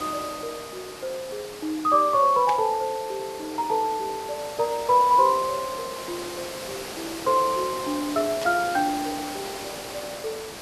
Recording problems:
background hiss; slope -3 dB per octave, SNR 11 dB
burst of static; at 2.5 s and at 8.5 s; peak -5 dB vs average level

